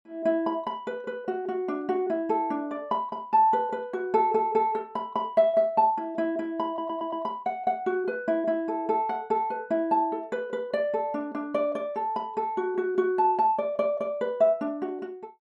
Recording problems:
audio stuttering; at 6.5 s

